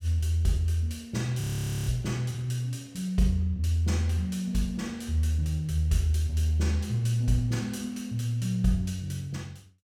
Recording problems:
frozen audio; at 1.5 s

